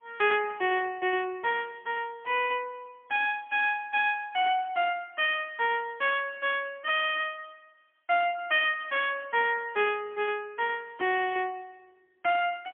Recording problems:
phone line; 260 Hz to 3.3 kHz, AMR-NB, then MP3
distorted audio; soft clipping, signal-to-distortion ratio 10 dB

